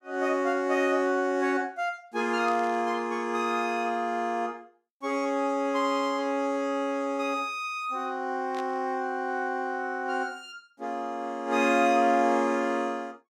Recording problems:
static burst; at 2.5 s and at 8.5 s; peak -12 dB vs average level

